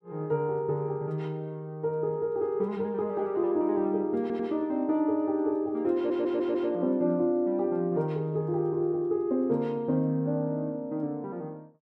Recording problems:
stutter; at 4 s and at 6 s

